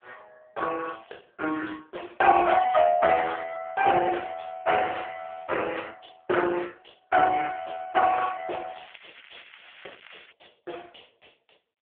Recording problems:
phone line; 320 Hz to 2.3 kHz, AMR-NB
crackling; from 8.5 to 10 s; loose cable, SNR 23 dB

